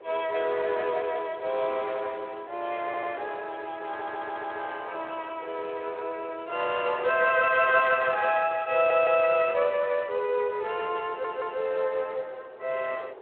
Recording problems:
telephone audio; 370 Hz to 3.6 kHz, Speex
wind noise; below 740 Hz, SNR 20 dB
audio stuttering; 4 times, first at 3 s

